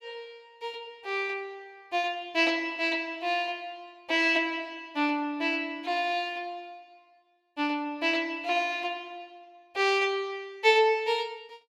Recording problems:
none

